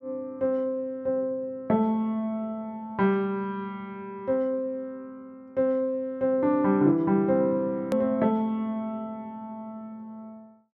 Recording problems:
click at an edit; at 8 s

